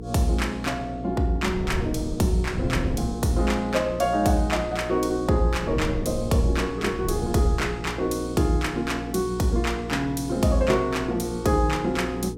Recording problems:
hum; 60 Hz, harmonics up to 480 Hz, SNR 11 dB
wind on the microphone; below 190 Hz, SNR 9 dB

